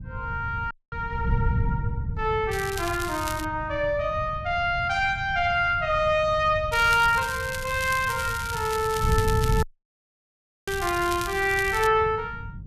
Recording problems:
wind noise; below 130 Hz, SNR 8 dB
audio cutting out; at 0.5 s and at 9.5 s for 1 s
crackle; at 2.5 s and from 6.5 to 12 s; loose cable, SNR 12 dB

